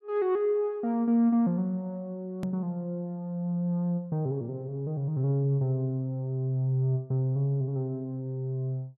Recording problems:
edit click; at 2.5 s

